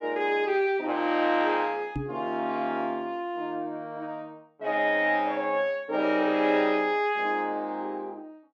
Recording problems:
microphone thump; at 2 s; peak -2 dB vs average level

